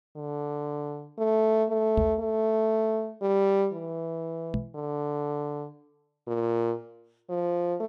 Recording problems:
microphone bump; at 2 s and at 4.5 s; peak +3 dB vs average level

